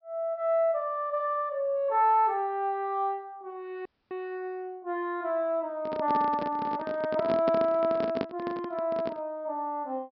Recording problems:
treble cut off; nothing above 5.5 kHz
audio cutting out; at 4 s
handling noise; from 6 to 9 s; peak +2 dB vs average level

